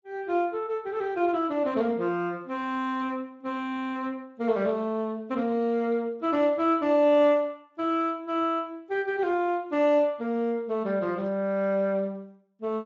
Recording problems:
lossy compression; Speex, log-spectral distance 2 dB

